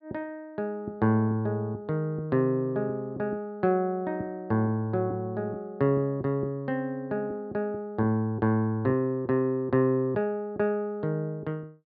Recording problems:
low-pass filter; nothing above 5.5 kHz

